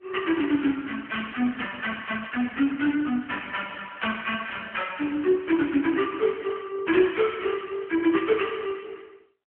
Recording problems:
telephone audio; 220 Hz to 3.3 kHz, AMR-NB

